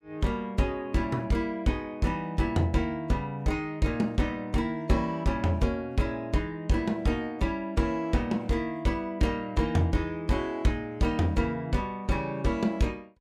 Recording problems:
none

